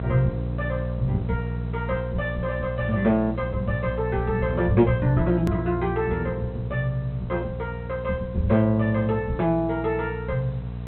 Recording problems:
treble missing; nothing above 4 kHz
electrical hum; 60 Hz, harmonics up to 720 Hz, SNR 6 dB
hiss; SNR 27 dB
edit click; at 5.5 s

